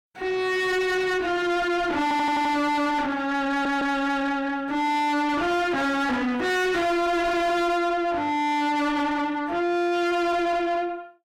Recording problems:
distortion; soft clipping, signal-to-distortion ratio 5 dB
audio stuttering; at 2 s and at 3.5 s

